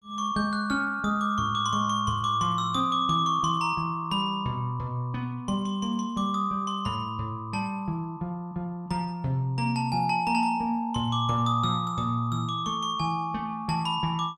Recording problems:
none

